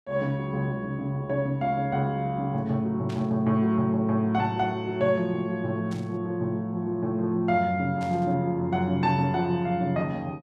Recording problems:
burst of static; at 3 s, at 6 s and at 8 s; peak -13 dB vs average level

